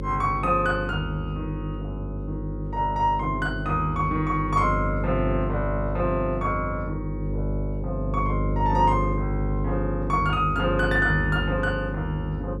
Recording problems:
hum; 50 Hz, harmonics up to 550 Hz, SNR 3 dB

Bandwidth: 13 kHz